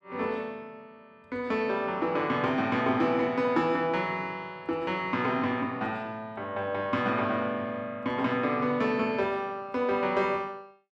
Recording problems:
none

